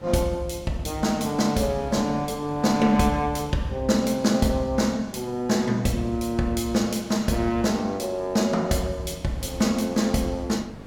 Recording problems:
electrical hum; 50 Hz, harmonics up to 850 Hz, SNR 22 dB
wind on the microphone; below 600 Hz, SNR 22 dB

